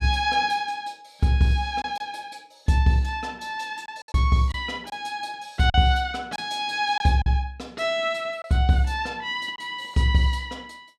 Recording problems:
packet loss; 3% of the sound replaced, filled with silence

